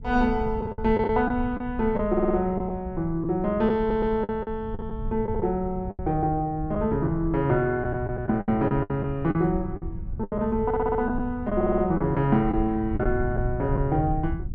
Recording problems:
rumble; below 100 Hz, SNR 10 dB
packet loss; 9% of the sound replaced, filled with the last packet
audio stuttering; 4 times, first at 2 s

